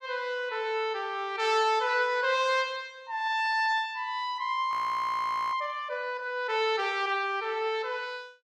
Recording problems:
audio freezing; at 4.5 s for 1 s

